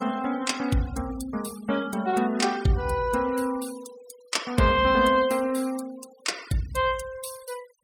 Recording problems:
noise reduction artefacts; signal-to-artefact ratio 18 dB

